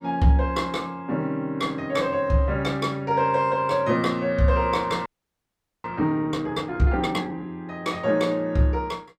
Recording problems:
audio freezing; at 5 s for 1 s

